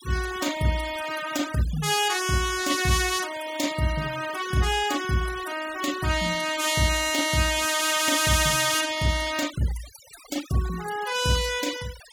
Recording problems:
denoising artefacts; signal-to-artefact ratio 14 dB

